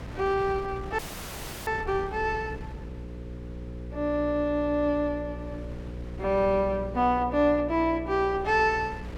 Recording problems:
electrical hum; 60 Hz, harmonics up to 540 Hz, SNR 13 dB
wind on the microphone; below 360 Hz, SNR 19 dB
audio freezing; at 1 s for 0.5 s

